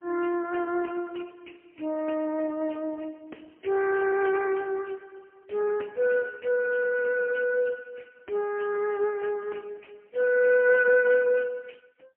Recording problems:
phone line; 260 Hz to 2.8 kHz, AMR-NB, then MP3

